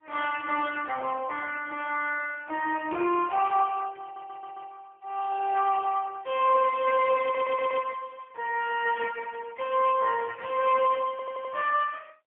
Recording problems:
telephone audio; 300 Hz to 3.1 kHz, AMR-NB, then MP3
stutter; at 4 s, at 7 s and at 11 s

